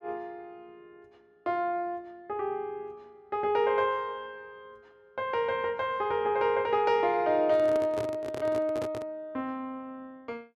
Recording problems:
microphone handling noise; from 7.5 to 9 s; peak -4 dB vs average level

